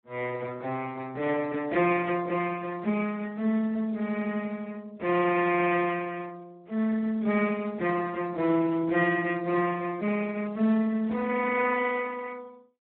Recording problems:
telephone audio; 260 Hz to 2.8 kHz, Speex

